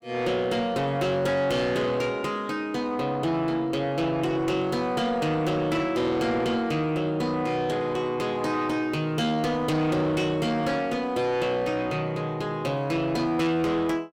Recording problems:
distortion; soft clipping, signal-to-distortion ratio 10 dB

